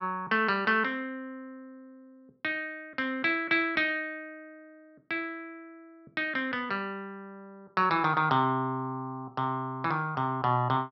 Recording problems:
low-pass filter; nothing above 5.7 kHz

